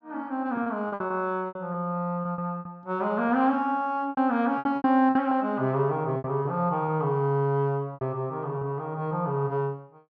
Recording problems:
lost packets; 10% of the sound replaced, filled with repeated pitch periods

